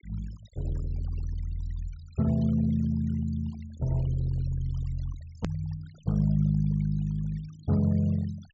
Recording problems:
treble cut off; nothing above 8 kHz
denoising artefacts; signal-to-artefact ratio 25 dB
click at an edit; at 5.5 s

